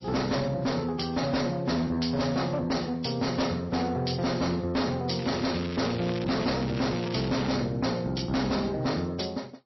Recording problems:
lossy codec; MP3, log-spectral distance 7 dB, nothing above 5.7 kHz
distorted audio; soft clipping, signal-to-distortion ratio 6 dB
crackling; from 5 to 7.5 s; loose cable, SNR 12 dB

